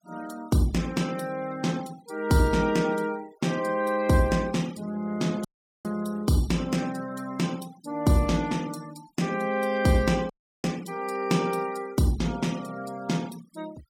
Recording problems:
noise reduction artefacts; signal-to-artefact ratio 20 dB
audio cutting out; at 5.5 s and at 10 s

